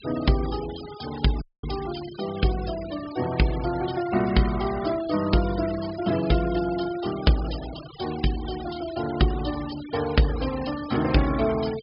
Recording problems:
low-pass filter; nothing above 5.5 kHz
noise reduction artefacts; signal-to-artefact ratio 14 dB
dropout; at 1.5 s

